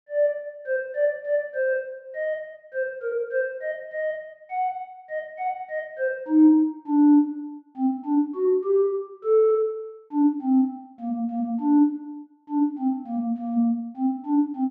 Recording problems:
none

